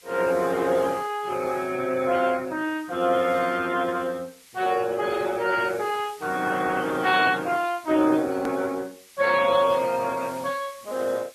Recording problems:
codec artefacts; Speex, then MP3, log-spectral distance 4 dB, nothing above 13.1 kHz
hiss; SNR 23 dB
hard cut with a click; at 8.5 s

